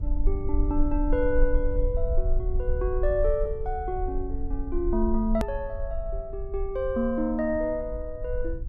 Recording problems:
low-frequency rumble; below 46 Hz, SNR 3 dB
hard cut with a click; at 5.5 s

